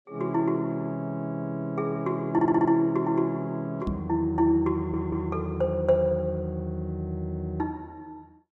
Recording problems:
audio stuttering; at 2.5 s and at 5 s
microphone bump; at 4 s; peak 0 dB vs average level

